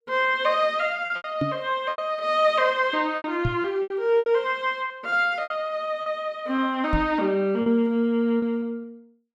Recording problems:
packet loss; 9% of the sound replaced, filled with repeated pitch periods
knock on the microphone; at 1.5 s, at 3.5 s and at 7 s; peak +2 dB vs average level

